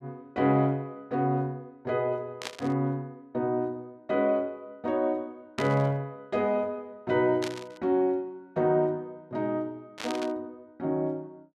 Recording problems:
burst of static; 4 times, first at 2.5 s; peak -1 dB vs average level

